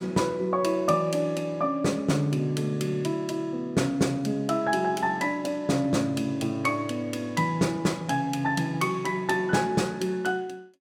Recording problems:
none

